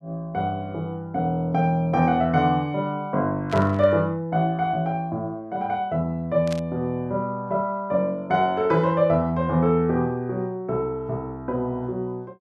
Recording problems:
burst of static; at 3.5 s and at 6.5 s; peak -7 dB vs average level

